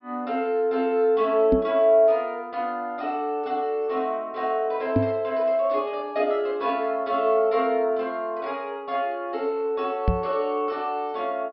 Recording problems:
treble missing; nothing above 5.3 kHz
knock on the microphone; at 1.5 s, at 5 s and at 10 s; peak +6 dB vs average level

